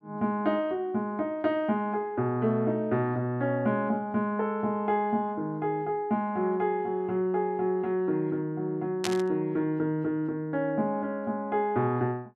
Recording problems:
burst of static; at 9 s; peak +1 dB vs average level

